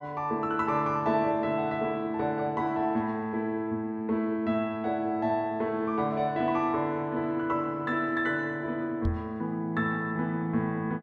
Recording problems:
microphone thump; at 9 s; peak +3 dB vs average level

